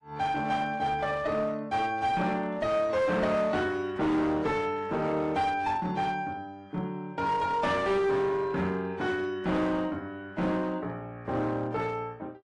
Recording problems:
lossy compression; AAC, log-spectral distance 2 dB, nothing above 10.4 kHz
distorted audio; hard clipping, uneven, signal-to-distortion ratio 10 dB

